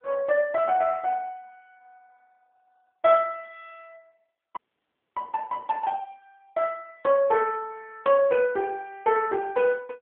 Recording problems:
telephone audio; 170 Hz to 3.1 kHz, AMR-NB
frozen audio; at 4.5 s for 0.5 s

